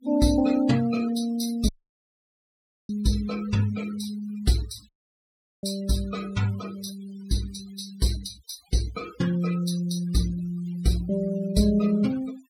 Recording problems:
denoising artefacts; signal-to-artefact ratio 16 dB
dropout; at 1.5 s for 1 s and at 5 s for 0.5 s

